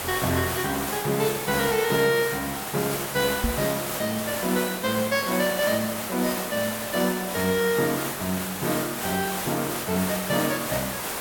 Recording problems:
background hiss; slope -3 dB per octave, SNR 3 dB
knock on the microphone; at 3.5 s; peak +4 dB vs average level

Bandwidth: 17 kHz